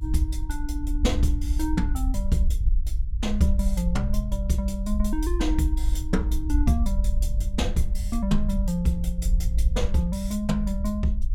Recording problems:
rumble; below 56 Hz, SNR 0 dB

